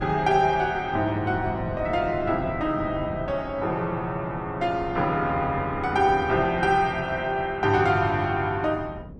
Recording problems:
wind on the microphone; below 230 Hz, SNR 14 dB

